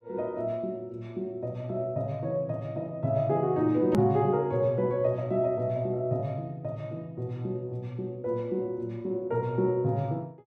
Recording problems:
hard cut with a click; at 4 s

